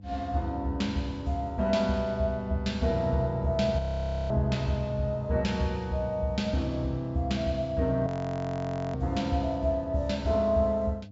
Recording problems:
treble missing; nothing above 8 kHz
hum; 50 Hz, harmonics up to 500 Hz, SNR 19 dB
frozen audio; at 4 s for 0.5 s and at 8 s for 1 s

